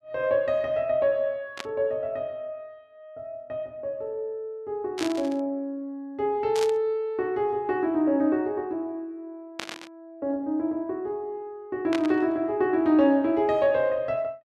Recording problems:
burst of static; 5 times, first at 1.5 s; peak -2 dB vs average level

